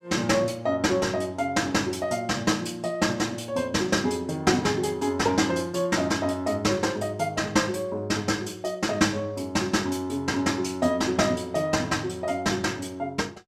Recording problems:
none

